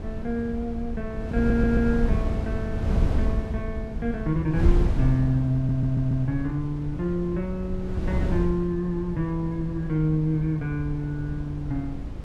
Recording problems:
wind noise; below 110 Hz, SNR 3 dB
audio stuttering; at 1.5 s and at 5.5 s

